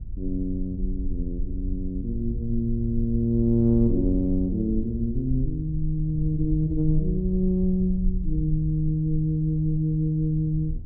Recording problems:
low-pass filter; nothing above 6.7 kHz
rumble; below 58 Hz, SNR 8 dB

